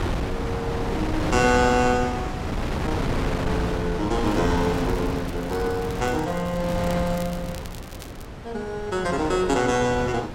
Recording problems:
wind noise; below 650 Hz, SNR 4 dB
crackling; from 4.5 to 8.5 s; loose cable, SNR 20 dB

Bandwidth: 16 kHz